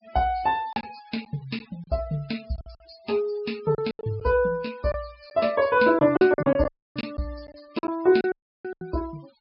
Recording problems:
low-pass filter; nothing above 5.3 kHz
noise reduction artefacts; signal-to-artefact ratio 23 dB
lost packets; 9% of the sound replaced, filled with silence
dropout; at 6.5 s and at 8.5 s

